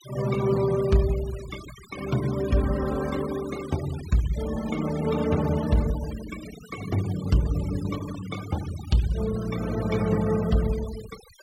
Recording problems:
denoising artefacts; signal-to-artefact ratio 16 dB

